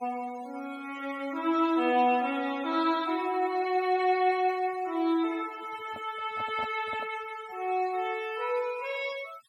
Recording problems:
noise reduction artefacts; signal-to-artefact ratio 20 dB
handling noise; from 5.5 to 7 s; peak -10 dB vs average level

